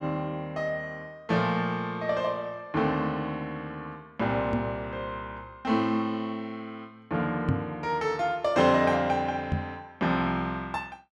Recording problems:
microphone bump; at 4.5 s, at 7.5 s and at 9.5 s; peak +5 dB vs average level

